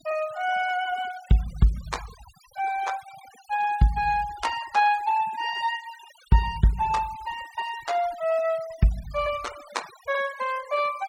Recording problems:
noise reduction artefacts; signal-to-artefact ratio 19 dB

